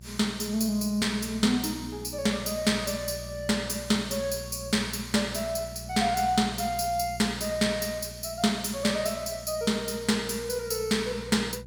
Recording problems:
hum; 60 Hz, harmonics up to 540 Hz, SNR 16 dB

